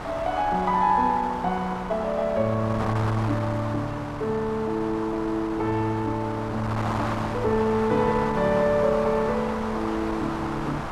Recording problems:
wind on the microphone; below 1.3 kHz, SNR 8 dB

